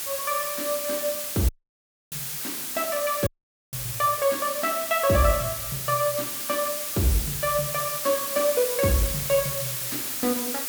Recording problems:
background hiss; slope +1 dB per octave, SNR 2 dB
audio cutting out; at 1.5 s for 0.5 s and at 3.5 s

